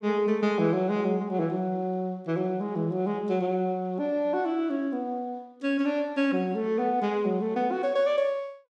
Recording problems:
none

